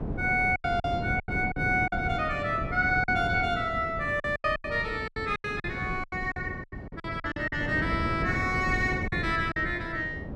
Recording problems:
wind on the microphone; below 320 Hz, SNR 7 dB
lost packets; 12% of the sound replaced, filled with silence

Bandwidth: 13 kHz